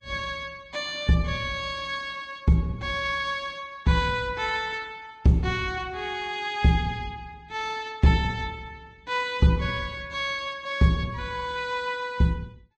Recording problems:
codec artefacts; Vorbis, log-spectral distance 3 dB

